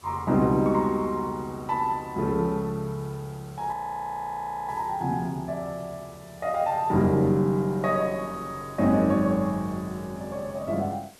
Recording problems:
hiss; slope -2 dB per octave, SNR 25 dB
audio freezing; at 3.5 s for 1 s

